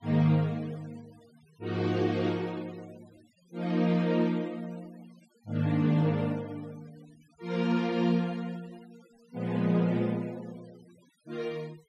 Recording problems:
noise reduction artefacts; signal-to-artefact ratio 26 dB

